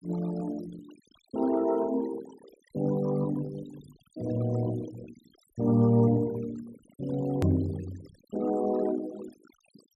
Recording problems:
noise reduction artefacts; signal-to-artefact ratio 20 dB
click at an edit; at 7.5 s

